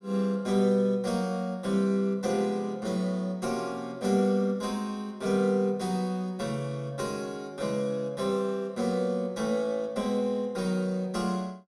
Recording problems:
none

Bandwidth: 15 kHz